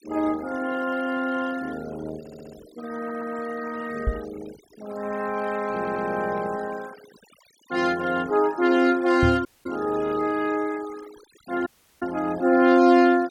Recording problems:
denoising artefacts; signal-to-artefact ratio 19 dB
audio stuttering; at 2 s, at 3 s and at 5.5 s
microphone bump; at 4 s and at 9 s; peak +3 dB vs average level
dropout; at 9.5 s and at 12 s

